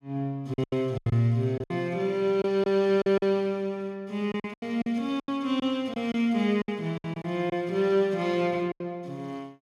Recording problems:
lost packets; 11% of the sound replaced, filled with silence

